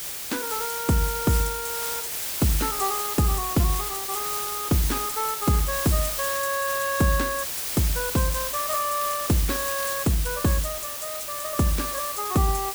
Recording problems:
hiss; slope 0 dB per octave, SNR 2 dB
crackling; from 7.5 to 10 s; loose cable, SNR 19 dB

